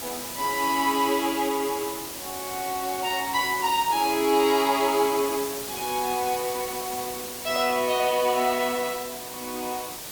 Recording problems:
hiss; slope -2 dB per octave, SNR 8 dB

